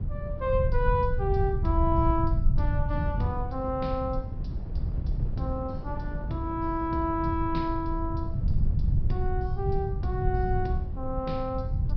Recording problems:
low-pass filter; nothing above 5.5 kHz
rumble; below 100 Hz, SNR 0 dB
wind noise; below 170 Hz, SNR 11 dB

